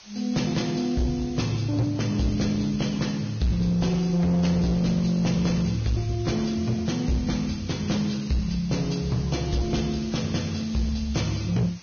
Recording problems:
lossy compression; Vorbis, log-spectral distance 6 dB, nothing above 6.5 kHz
distortion; hard clipping, uneven, signal-to-distortion ratio 11 dB
hiss; slope +1 dB per octave, SNR 21 dB

